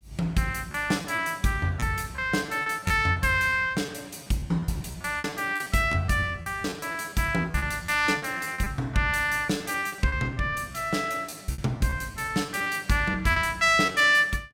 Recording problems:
packet loss; 13% of the sound replaced, filled with repeated pitch periods

